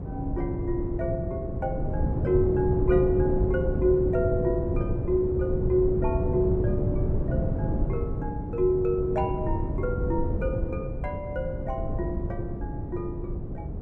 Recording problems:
wind noise; below 200 Hz, SNR 1 dB

